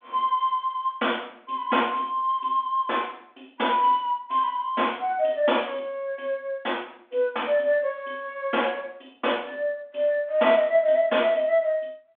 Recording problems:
telephone audio; 240 Hz to 3.5 kHz, G.726

